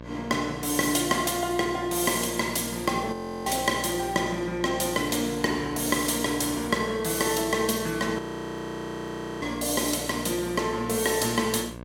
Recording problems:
hum; 60 Hz, harmonics up to 2.2 kHz, SNR 15 dB
audio freezing; at 3 s and at 8 s for 1 s

